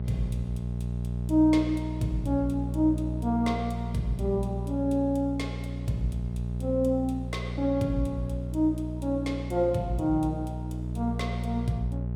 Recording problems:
electrical hum; 60 Hz, harmonics up to 600 Hz, SNR 4 dB

